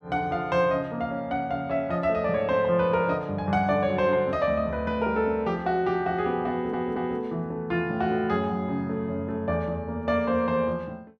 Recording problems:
stutter; at 6.5 s

